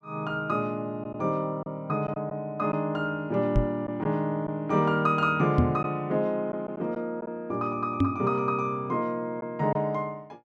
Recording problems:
lost packets; 2% of the sound replaced, filled with silence
microphone bump; at 3.5 s, at 5.5 s and at 8 s; peak +9 dB vs average level

